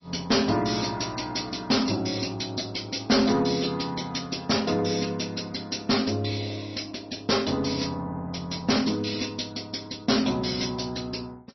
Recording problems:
codec artefacts; MP3, log-spectral distance 9 dB, nothing above 5.8 kHz
distortion; soft clipping, signal-to-distortion ratio 8 dB

